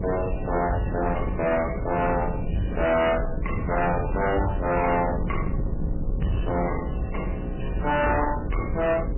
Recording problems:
lossy codec; MP3, then MP3, log-spectral distance 4 dB, nothing above 2.4 kHz
distorted audio; soft clipping, signal-to-distortion ratio 6 dB
hum; 60 Hz, harmonics up to 540 Hz, SNR 10 dB
rumble; below 170 Hz, SNR 5 dB

